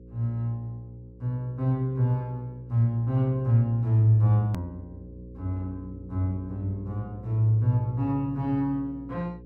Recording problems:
electrical hum; 60 Hz, harmonics up to 540 Hz, SNR 19 dB
hard cut with a click; at 4.5 s

